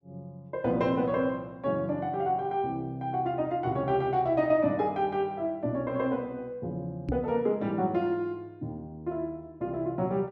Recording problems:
knock on the microphone; at 7 s; peak +2 dB vs average level

